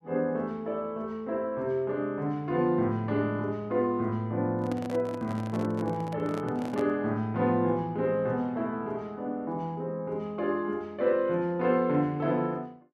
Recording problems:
microphone handling noise; from 4.5 to 7 s; peak -4 dB vs average level

